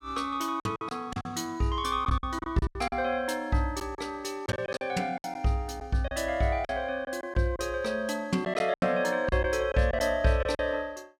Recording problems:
lost packets; 10% of the sound replaced, filled with silence

